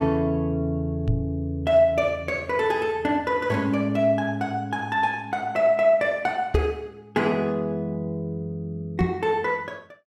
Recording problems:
microphone thump; at 1 s, at 6.5 s and at 9 s; peak +5 dB vs average level

